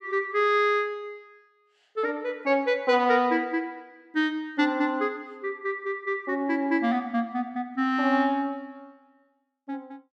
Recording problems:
none

